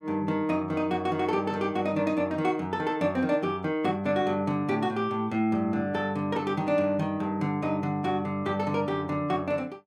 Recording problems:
none

